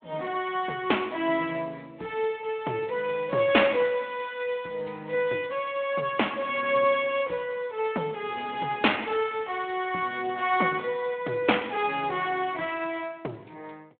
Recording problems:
telephone audio; 280 Hz to 3.4 kHz, Speex

